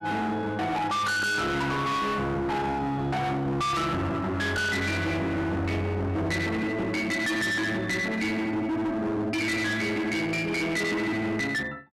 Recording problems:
distorted audio; hard clipping, signal-to-distortion ratio 6 dB

